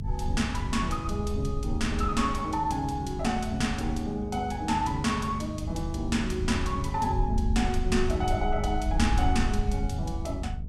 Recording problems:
hum; 50 Hz, harmonics up to 500 Hz, SNR 10 dB
rumble; below 82 Hz, SNR 7 dB
wind noise; below 66 Hz, SNR 5 dB

